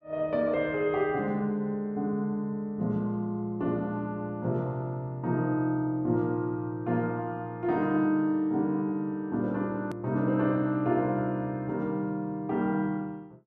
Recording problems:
click at an edit; at 10 s

